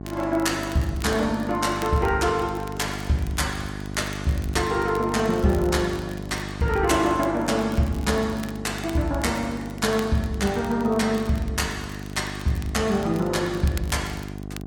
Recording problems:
codec artefacts; AAC, log-spectral distance 3 dB
hum; 50 Hz, harmonics up to 1.1 kHz, SNR 10 dB
crackling; vinyl, SNR 21 dB

